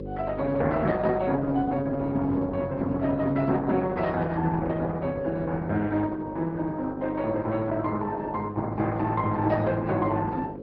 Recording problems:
treble missing; nothing above 5.5 kHz
lossy codec; Opus, log-spectral distance 3 dB
hum; 50 Hz, harmonics up to 750 Hz, SNR 11 dB

